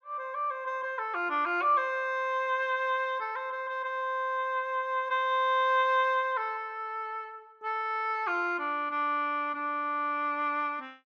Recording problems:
none

